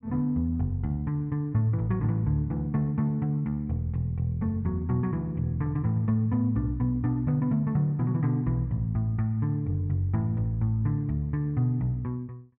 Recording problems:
none

